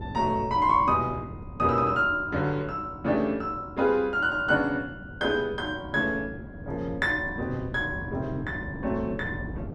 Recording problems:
wind noise; below 280 Hz, SNR 13 dB

